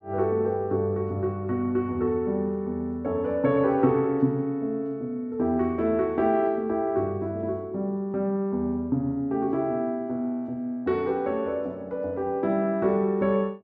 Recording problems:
none

